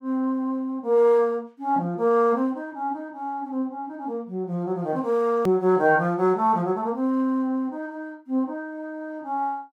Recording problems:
hard cut with a click; at 5.5 s

